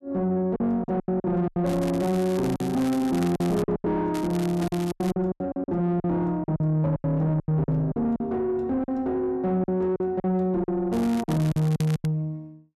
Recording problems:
distorted audio; soft clipping, signal-to-distortion ratio 10 dB
packet loss; 13% of the sound replaced, filled with silence
crackle; from 1.5 to 3.5 s, at 4 s and from 11 to 12 s; loose cable, SNR 17 dB

